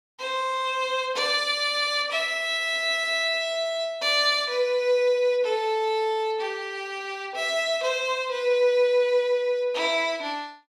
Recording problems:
none

